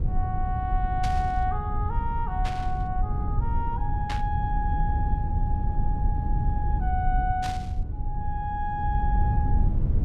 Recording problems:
low-frequency rumble; below 92 Hz, SNR -3 dB
static burst; 4 times, first at 1 s; peak 0 dB vs average level

